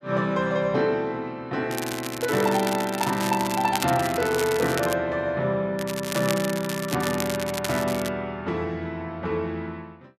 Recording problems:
crackling; from 1.5 to 5 s and from 6 to 8 s; loose cable, SNR 8 dB

